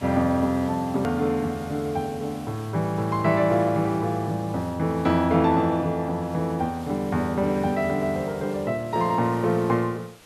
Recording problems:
hiss; slope -2 dB per octave, SNR 22 dB
hard cut with a click; at 1 s

